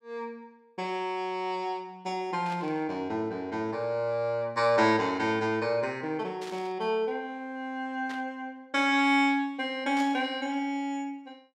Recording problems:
burst of static; 4 times, first at 2.5 s; peak -9 dB vs average level

